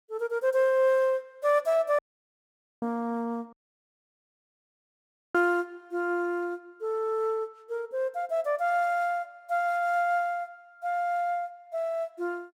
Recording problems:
dropout; at 2 s for 1 s and at 3.5 s for 2 s

